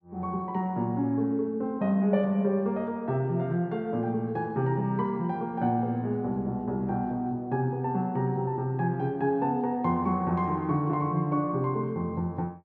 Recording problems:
none

